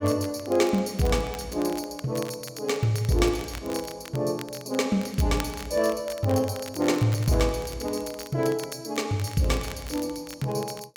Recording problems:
crackle; vinyl, SNR 17 dB

